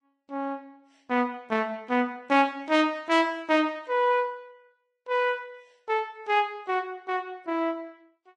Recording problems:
lossy compression; Vorbis, log-spectral distance 2 dB

